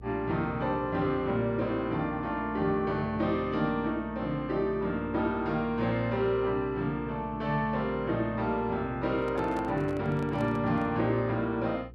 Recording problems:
electrical hum; 60 Hz, harmonics up to 480 Hz, SNR 18 dB
microphone handling noise; from 9 to 11 s; peak -9 dB vs average level

